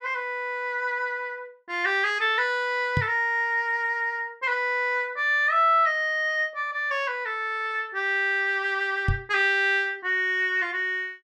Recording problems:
microphone bump; at 3 s and at 9 s; peak +2 dB vs average level

